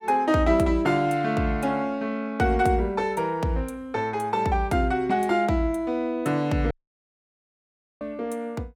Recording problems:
audio cutting out; at 6.5 s for 1.5 s

